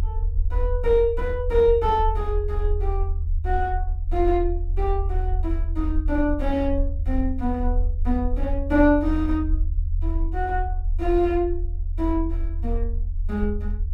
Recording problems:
low-frequency rumble; below 76 Hz, strongest tone 34 Hz, SNR 2 dB

